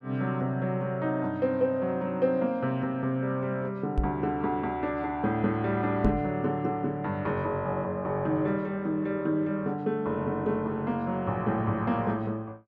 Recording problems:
microphone thump; at 4 s and at 6 s; peak +6 dB vs average level

